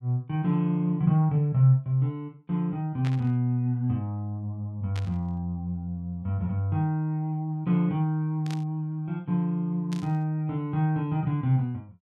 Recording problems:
static burst; 4 times, first at 3 s; peak -9 dB vs average level

